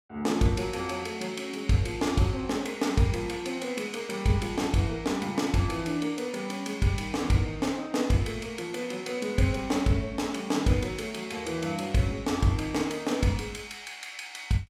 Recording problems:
none

